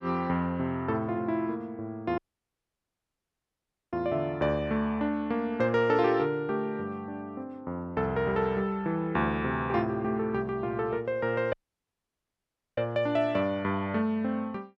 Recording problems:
dropout; at 2 s for 2 s and at 12 s for 1 s

